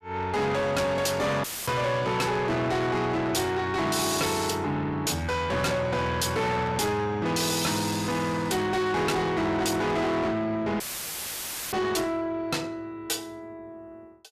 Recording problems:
distortion; soft clipping, signal-to-distortion ratio 6 dB
audio cutting out; at 1.5 s and at 11 s for 1 s; filled with static

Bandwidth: 14.5 kHz